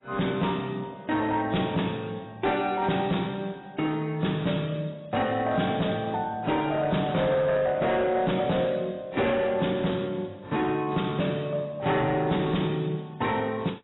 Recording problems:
lossy codec; AAC, log-spectral distance 5 dB, nothing above 3.9 kHz
distortion; hard clipping, signal-to-distortion ratio 11 dB

